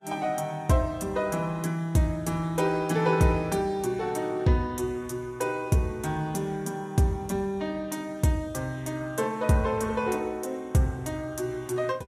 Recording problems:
lossy codec; Vorbis, log-spectral distance 2 dB, nothing above 14.7 kHz

